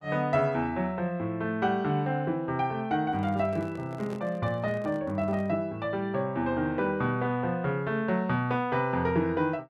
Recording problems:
handling noise; from 3 to 5.5 s; peak -9 dB vs average level

